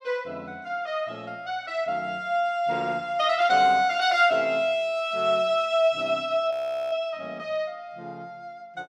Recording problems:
frozen audio; at 6.5 s

